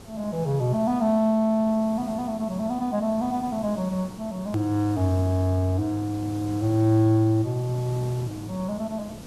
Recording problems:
hiss; SNR 16 dB
edit click; at 4.5 s

